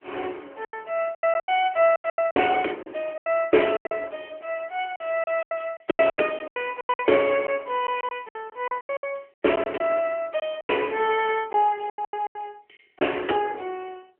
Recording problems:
phone line; 260 Hz to 3.2 kHz, AMR-NB
packet loss; 15% of the sound replaced, filled with silence

